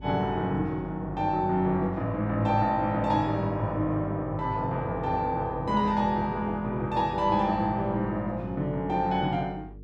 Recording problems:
electrical hum; 50 Hz, harmonics up to 450 Hz, SNR 18 dB

